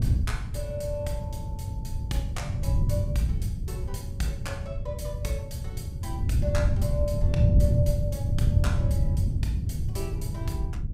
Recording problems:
wind noise; below 120 Hz, SNR -7 dB

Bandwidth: 15.5 kHz